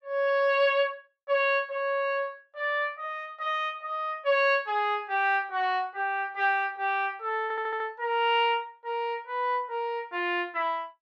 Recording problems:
stutter; at 7.5 s

